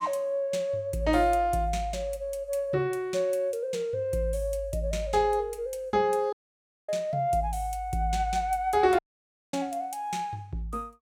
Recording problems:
audio cutting out; at 6.5 s for 0.5 s and at 9 s for 0.5 s

